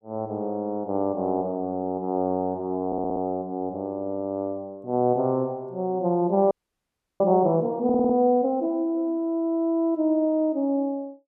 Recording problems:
stutter; at 3 s and at 8 s
audio freezing; at 6.5 s for 0.5 s

